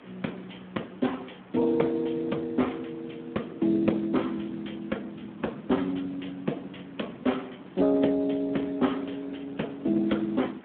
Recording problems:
phone line; 170 Hz to 3.4 kHz, Speex
hiss; SNR 23 dB
wind on the microphone; below 360 Hz, SNR 20 dB

